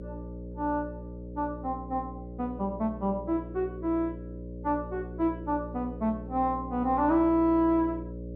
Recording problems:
mains hum; 60 Hz, harmonics up to 600 Hz, SNR 11 dB

